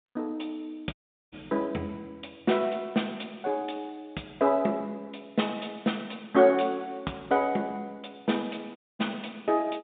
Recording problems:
telephone audio; 130 Hz to 3.7 kHz, G.711
dropout; at 1 s and at 9 s

